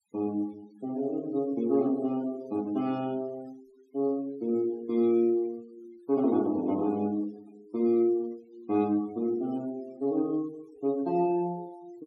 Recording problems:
noise reduction artefacts; signal-to-artefact ratio 25 dB

